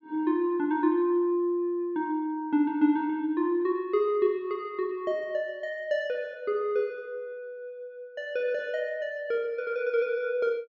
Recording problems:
none

